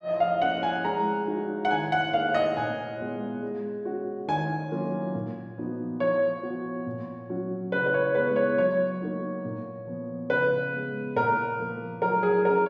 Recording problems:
none

